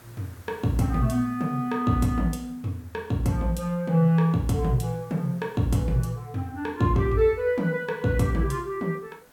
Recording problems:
background hiss; SNR 28 dB

